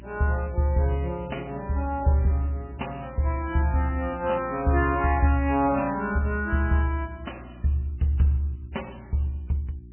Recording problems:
codec artefacts; MP3, log-spectral distance 3 dB, nothing above 3 kHz
hum; 60 Hz, harmonics up to 360 Hz, SNR 19 dB

